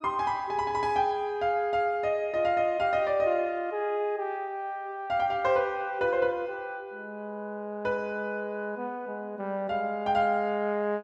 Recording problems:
none

